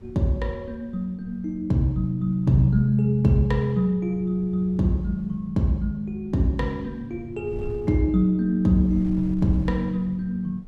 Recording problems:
wind noise; below 100 Hz, SNR 20 dB

